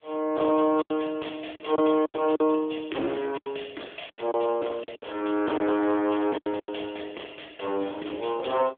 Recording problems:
telephone audio; 260 Hz to 3.8 kHz, AMR-NB
distorted audio; hard clipping, signal-to-distortion ratio 12 dB
lost packets; 8% of the sound replaced, filled with silence

